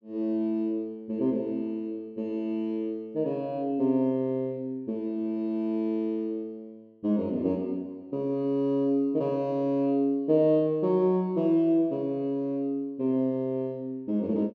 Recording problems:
none

